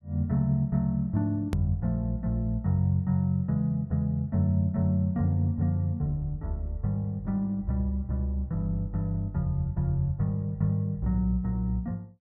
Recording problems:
edit click; at 1.5 s

